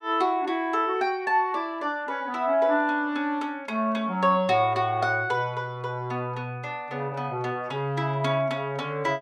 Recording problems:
none

